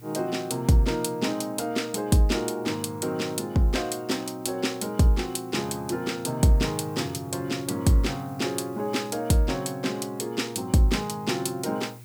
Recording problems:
electrical hum; 60 Hz, harmonics up to 360 Hz, SNR 22 dB
background hiss; SNR 26 dB

